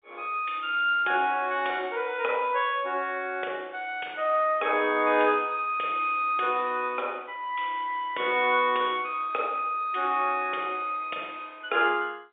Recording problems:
phone line; 320 Hz to 3.6 kHz, G.711

